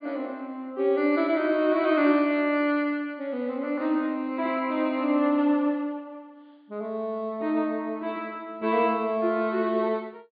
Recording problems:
treble cut off; nothing above 4.7 kHz

